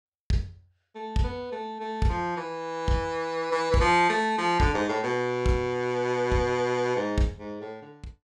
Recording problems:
none

